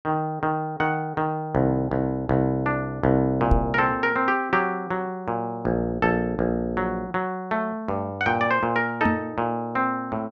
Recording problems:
microphone bump; at 3.5 s and at 9 s; peak +6 dB vs average level

